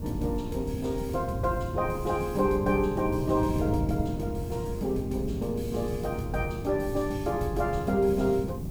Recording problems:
background hiss; SNR 25 dB
wind on the microphone; below 200 Hz, SNR 6 dB

